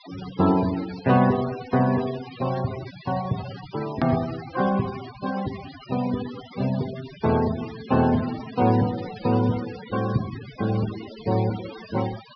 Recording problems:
treble cut off; nothing above 5.5 kHz
denoising artefacts; signal-to-artefact ratio 14 dB
edit click; at 4 s

